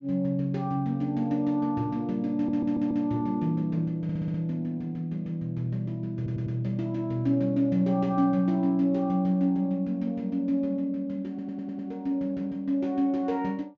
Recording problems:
treble missing; nothing above 7.3 kHz
audio stuttering; 4 times, first at 2.5 s

